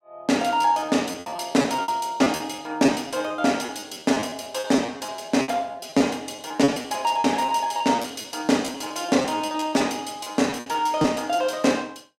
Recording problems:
packet loss; 16% of the sound replaced, filled with repeated pitch periods

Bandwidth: 16.5 kHz